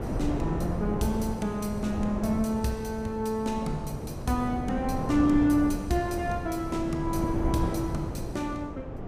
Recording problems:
wind on the microphone; below 370 Hz, SNR 5 dB

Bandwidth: 15.5 kHz